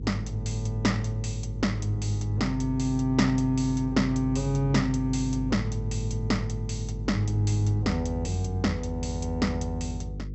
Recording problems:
low-pass filter; nothing above 7.8 kHz
hum; 50 Hz, harmonics up to 500 Hz, SNR 8 dB

